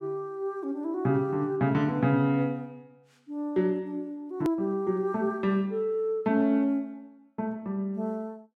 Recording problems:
click at an edit; at 4.5 s

